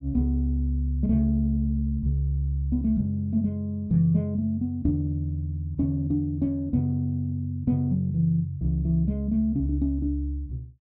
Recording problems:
low-pass filter; nothing above 5.5 kHz

